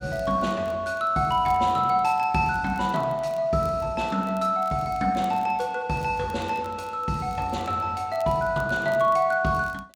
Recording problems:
crackle; vinyl, SNR 30 dB

